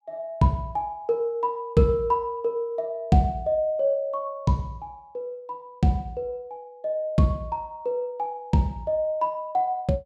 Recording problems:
none

